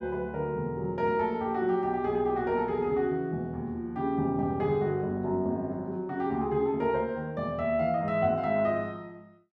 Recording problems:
none

